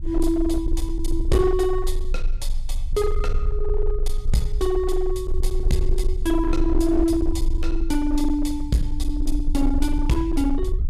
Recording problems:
distorted audio; hard clipping, uneven, signal-to-distortion ratio 11 dB
rumble; below 44 Hz, strongest tone 22 Hz, SNR 3 dB

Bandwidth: 14.5 kHz